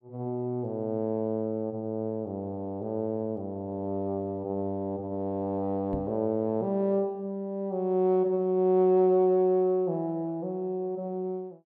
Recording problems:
microphone thump; at 6 s; peak -4 dB vs average level

